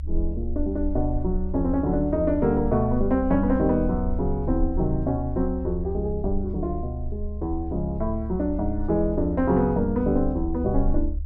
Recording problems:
low-frequency rumble; below 72 Hz, SNR 7 dB

